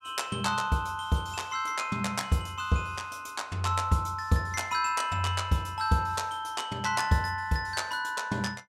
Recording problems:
none

